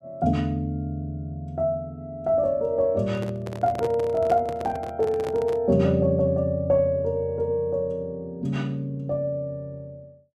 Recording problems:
handling noise; from 3 to 5.5 s; peak -5 dB vs average level

